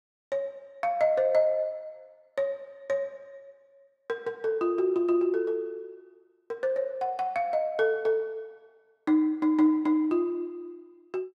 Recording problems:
none

